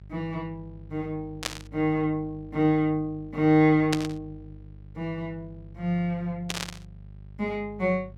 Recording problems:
mains hum; 50 Hz, harmonics up to 400 Hz, SNR 19 dB
static burst; at 1.5 s, at 4 s and at 6.5 s; peak +3 dB vs average level

